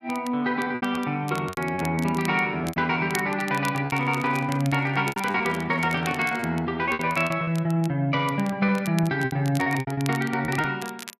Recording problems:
crackling; vinyl, SNR 17 dB
packet loss; 11% of the sound replaced, filled with repeated pitch periods
microphone handling noise; from 4 to 6.5 s; peak -8 dB vs average level

